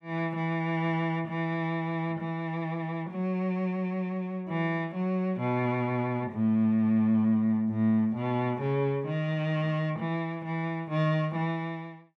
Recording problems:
none

